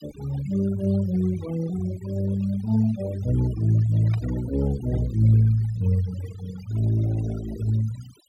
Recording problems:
noise reduction artefacts; signal-to-artefact ratio 17 dB
burst of static; at 4 s; peak -15 dB vs average level

